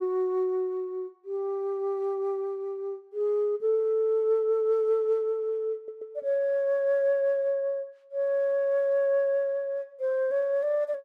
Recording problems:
audio stuttering; at 6 s

